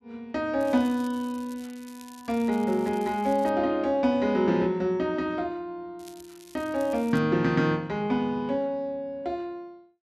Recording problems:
crackle; from 0.5 to 3.5 s and from 6 to 7 s; loose cable, SNR 24 dB

